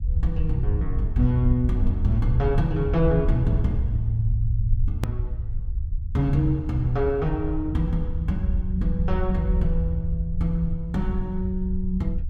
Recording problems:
low-frequency rumble; below 74 Hz, SNR 2 dB
click at an edit; at 5 s

